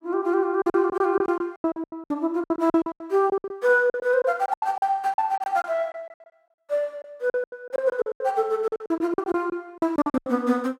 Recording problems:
lost packets; 19% of the sound replaced, filled with silence

